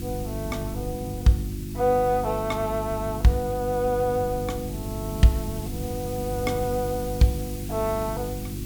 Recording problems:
electrical hum; 50 Hz, harmonics up to 350 Hz, SNR 8 dB
background hiss; slope +2 dB per octave, SNR 15 dB
wind on the microphone; below 190 Hz, SNR 14 dB

